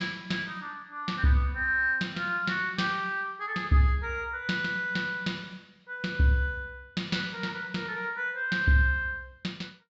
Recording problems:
low-pass filter; nothing above 7.6 kHz

